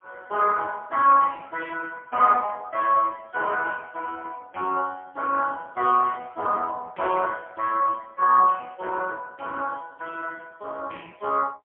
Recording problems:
phone line; 260 Hz to 3.3 kHz, AMR-NB, then MP3

